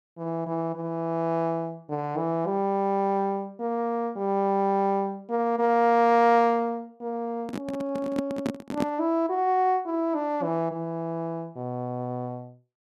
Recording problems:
handling noise; from 7.5 to 9 s; peak +2 dB vs average level

